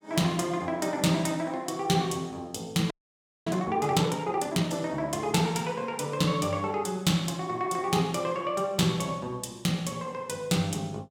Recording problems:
frozen audio; at 3 s for 0.5 s

